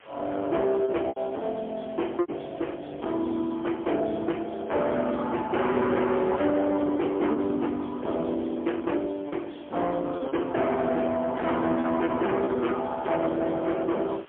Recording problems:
telephone audio; 260 Hz to 3.3 kHz, AMR-NB, then MP3
distorted audio; hard clipping, signal-to-distortion ratio 7 dB
hiss; SNR 26 dB
packet loss; 3% of the sound replaced, filled with repeated pitch periods

